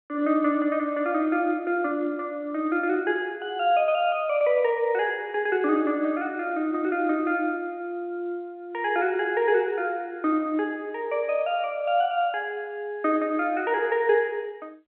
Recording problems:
phone line; 220 Hz to 3.3 kHz, G.711

